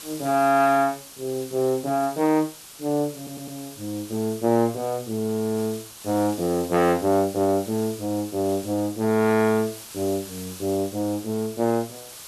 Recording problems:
hiss; SNR 15 dB
stutter; at 3 s

